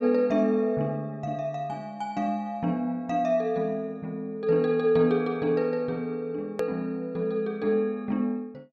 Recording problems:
edit click; at 6.5 s

